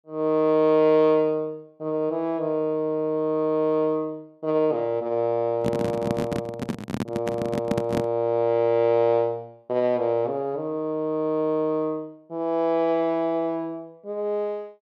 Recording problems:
microphone handling noise; from 5.5 to 8 s; peak +2 dB vs average level

